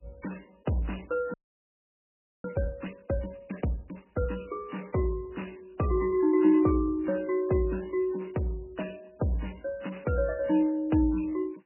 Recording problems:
lossy compression; MP3, then MP3, log-spectral distance 4 dB, nothing above 2.9 kHz
frozen audio; at 1.5 s for 1 s

